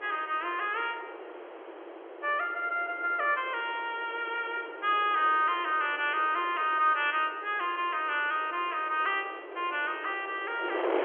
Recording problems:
telephone audio; 320 Hz to 3.4 kHz, G.711
wind noise; below 960 Hz, SNR 14 dB

